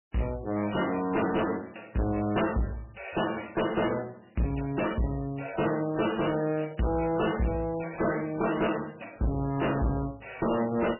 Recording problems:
lossy codec; MP3, log-spectral distance 9 dB, nothing above 2.9 kHz
distortion; hard clipping, uneven, signal-to-distortion ratio 7 dB

